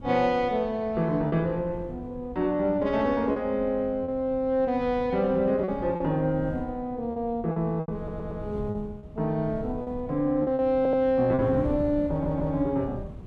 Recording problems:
wind noise; below 200 Hz, SNR 15 dB
lost packets; 5% of the sound replaced, filled with repeated pitch periods
audio stuttering; at 8 s, at 11 s and at 12 s

